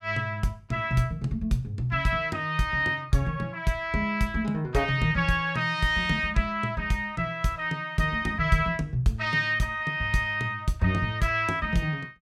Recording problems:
none

